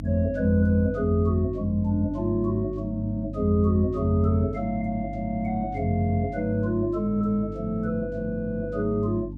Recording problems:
hum; 50 Hz, harmonics up to 300 Hz, SNR 11 dB

